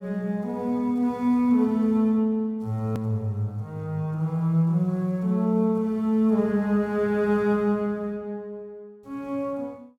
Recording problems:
hard cut with a click; at 3 s

